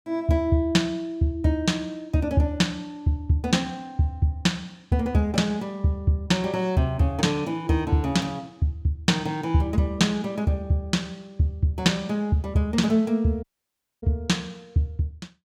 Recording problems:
dropout; at 13 s for 0.5 s

